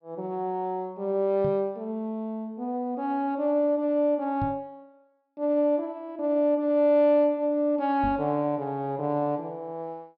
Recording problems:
low-pass filter; nothing above 5.5 kHz
microphone thump; at 1.5 s, at 4.5 s and at 8 s; peak -3 dB vs average level

